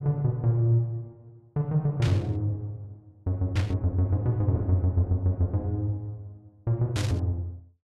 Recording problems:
burst of static; at 2 s, at 3.5 s and at 7 s; peak -4 dB vs average level

